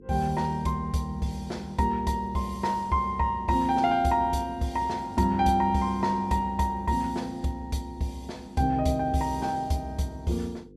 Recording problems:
hum; 50 Hz, harmonics up to 500 Hz, SNR 23 dB

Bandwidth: 14 kHz